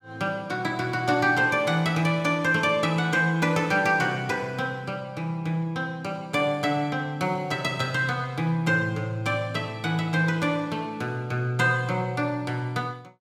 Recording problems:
none

